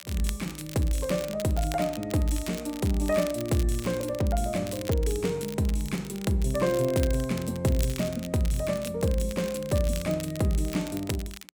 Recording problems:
crackle; vinyl, SNR 14 dB

